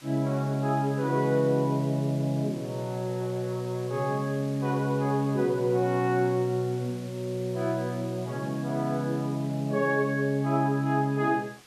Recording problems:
background hiss; slope 0 dB per octave, SNR 22 dB

